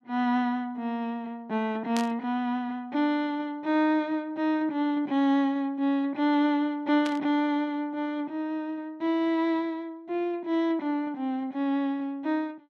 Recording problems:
static burst; at 2 s and at 7 s; peak -3 dB vs average level

